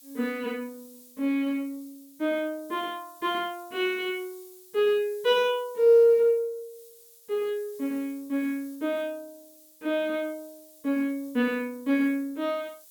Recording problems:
hiss; SNR 24 dB

